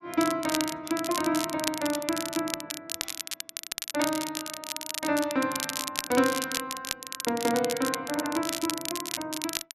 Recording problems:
crackling; vinyl, SNR 4 dB

